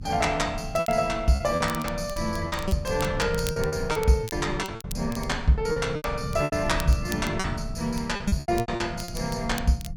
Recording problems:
low-frequency rumble; below 170 Hz, SNR 9 dB
crackling; vinyl, SNR 16 dB
packet loss; 13% of the sound replaced, filled with repeated pitch periods

